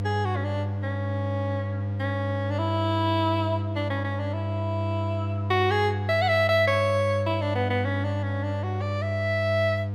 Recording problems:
hum; 50 Hz, harmonics up to 700 Hz, SNR 2 dB

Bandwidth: 16.5 kHz